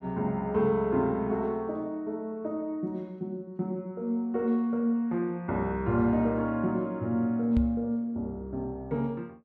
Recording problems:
microphone bump; at 7.5 s; peak +4 dB vs average level

